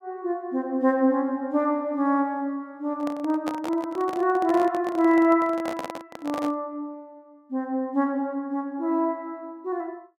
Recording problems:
handling noise; from 3 to 6.5 s; peak -3 dB vs average level

